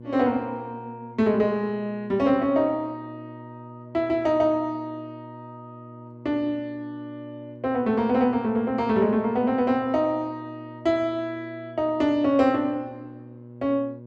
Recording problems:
electrical hum; 60 Hz, harmonics up to 600 Hz, SNR 19 dB

